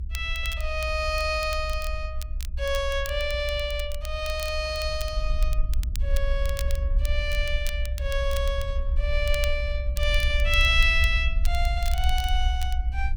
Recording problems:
rumble; below 64 Hz, SNR 2 dB
crackling; vinyl, SNR 15 dB

